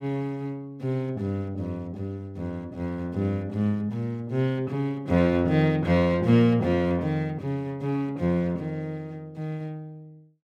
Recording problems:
none

